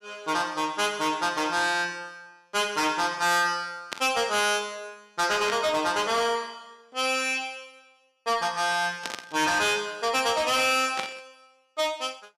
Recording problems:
distorted audio; hard clipping, signal-to-distortion ratio 11 dB
burst of static; 4 times, first at 4 s; peak -2 dB vs average level

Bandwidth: 14.5 kHz